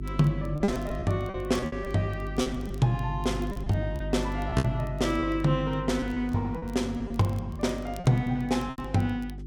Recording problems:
electrical hum; 50 Hz, harmonics up to 400 Hz, SNR 8 dB
crackle; vinyl, SNR 29 dB
packet loss; 10% of the sound replaced, filled with repeated pitch periods

